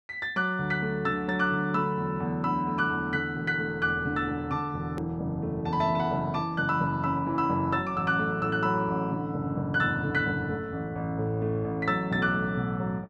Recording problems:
hard cut with a click; at 5 s

